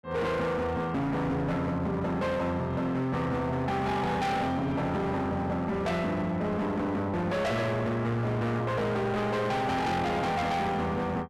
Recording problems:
distortion; hard clipping, signal-to-distortion ratio 7 dB

